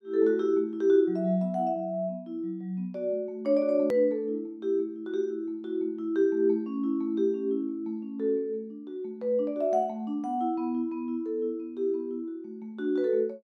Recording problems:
edit click; at 4 s

